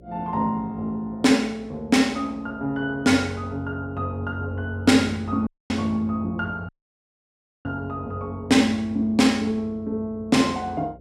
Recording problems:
electrical hum; 60 Hz, harmonics up to 600 Hz, SNR 25 dB
dropout; at 5.5 s and at 6.5 s for 1 s

